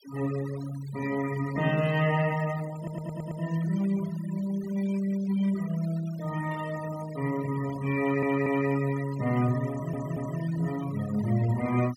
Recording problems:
denoising artefacts; signal-to-artefact ratio 17 dB
audio stuttering; at 3 s, at 8 s and at 9.5 s

